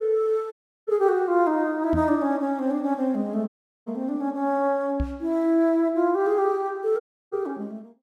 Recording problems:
dropout; at 0.5 s, at 3.5 s and at 7 s
microphone thump; at 2 s, at 5 s and at 7.5 s; peak -1 dB vs average level

